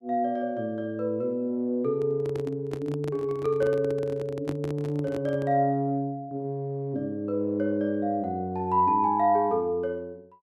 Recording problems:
handling noise; from 2 to 5.5 s; peak -3 dB vs average level

